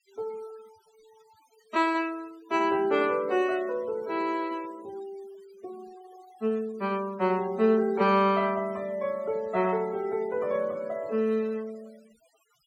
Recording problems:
denoising artefacts; signal-to-artefact ratio 25 dB

